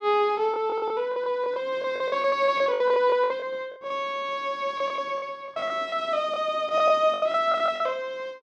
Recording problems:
lost packets; 13% of the sound replaced, filled with the last packet

